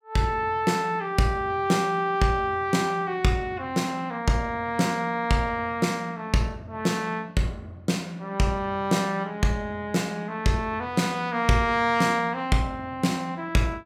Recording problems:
none

